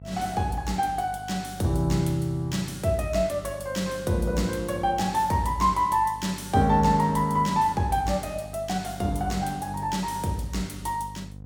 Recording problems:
electrical hum; 50 Hz, harmonics up to 750 Hz, SNR 17 dB

